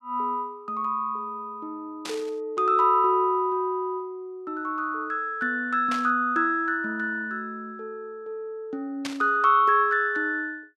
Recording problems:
burst of static; at 2 s, at 6 s and at 9 s; peak -4 dB vs average level

